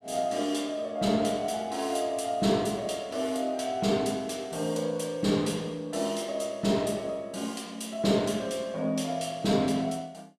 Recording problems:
none

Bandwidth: 14.5 kHz